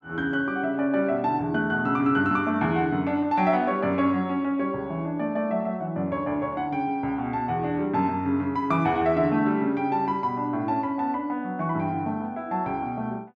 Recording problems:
none

